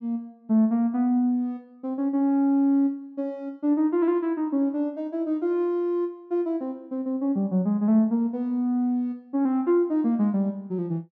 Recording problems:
none

